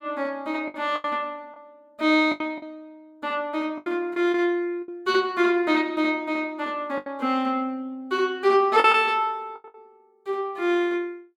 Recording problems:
lost packets; 7% of the sound replaced, filled with the last packet

